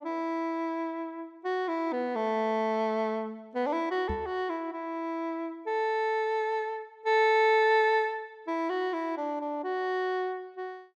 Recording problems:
microphone bump; at 4 s; peak -3 dB vs average level

